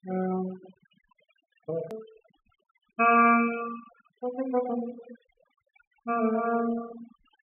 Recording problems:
low-pass filter; nothing above 3.4 kHz
denoising artefacts; signal-to-artefact ratio 17 dB
click at an edit; at 2 s

